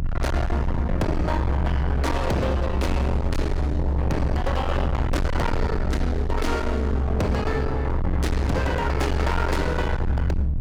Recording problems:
distorted audio; hard clipping, signal-to-distortion ratio 6 dB
rumble; below 110 Hz, strongest tone 68 Hz, SNR 0 dB

